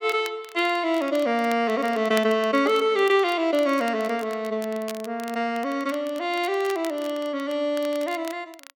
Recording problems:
crackle; vinyl, SNR 20 dB

